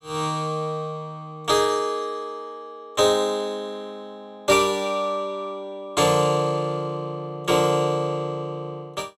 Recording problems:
none

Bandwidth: 14.5 kHz